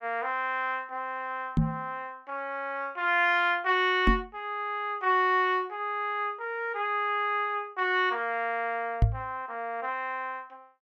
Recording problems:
knock on the microphone; at 1.5 s, at 4 s and at 9 s; peak +9 dB vs average level

